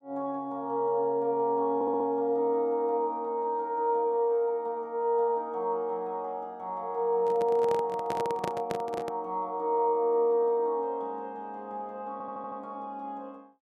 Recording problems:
stutter; at 2 s and at 12 s
microphone handling noise; from 7 to 9 s; peak -1 dB vs average level

